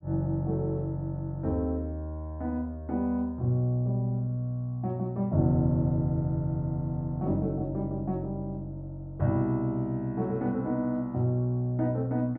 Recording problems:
none

